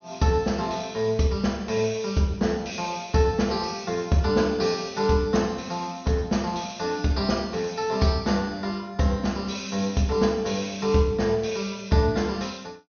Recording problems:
treble missing; nothing above 6.4 kHz

